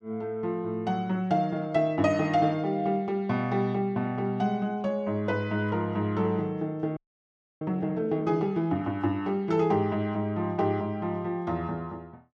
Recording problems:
audio freezing; at 7 s for 0.5 s

